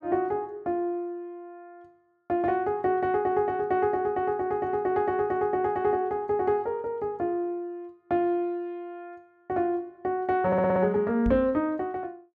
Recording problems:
stutter; at 10 s
microphone thump; at 11 s; peak 0 dB vs average level

